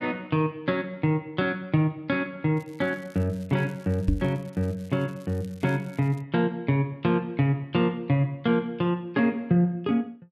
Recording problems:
crackle; from 2.5 to 6 s; loose cable, SNR 29 dB
microphone bump; at 4 s; peak +6 dB vs average level

